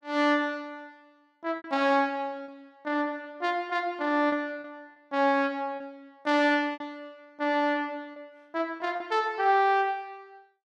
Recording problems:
packet loss; 5% of the sound replaced, filled with repeated pitch periods

